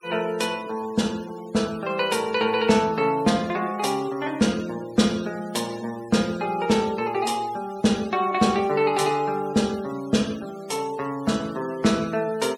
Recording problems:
noise reduction artefacts; signal-to-artefact ratio 20 dB

